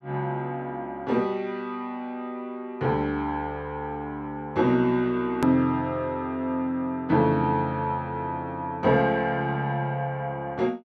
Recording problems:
edit click; at 5.5 s

